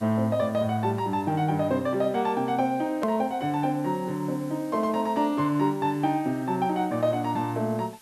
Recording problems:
background hiss; slope 0 dB per octave, SNR 26 dB
click at an edit; at 3 s

